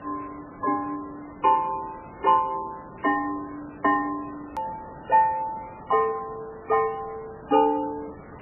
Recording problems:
codec artefacts; MP3, log-spectral distance 12 dB, nothing above 2.4 kHz
background hiss; SNR 19 dB
click at an edit; at 4.5 s

